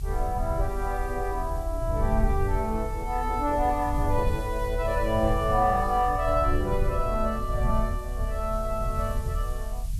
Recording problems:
hiss; slope +3 dB per octave, SNR 22 dB
low-frequency rumble; below 74 Hz, SNR 4 dB

